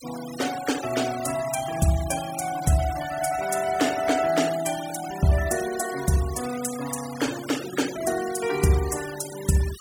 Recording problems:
noise reduction artefacts; signal-to-artefact ratio 12 dB

